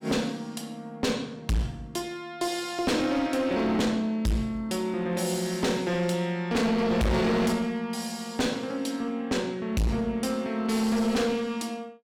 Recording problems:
distortion; hard clipping, uneven, signal-to-distortion ratio 6 dB

